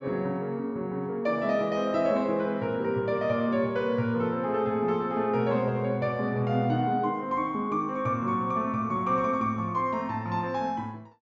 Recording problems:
low-pass filter; nothing above 8 kHz

